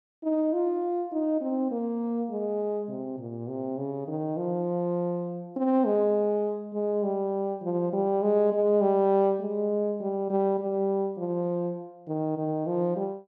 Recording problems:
none

